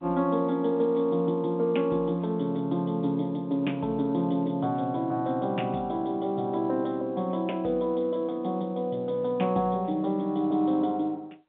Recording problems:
phone line; 150 Hz to 3.6 kHz, G.711

